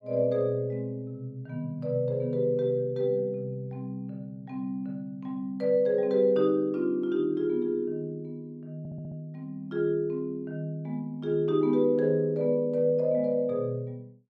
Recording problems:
audio stuttering; at 9 s

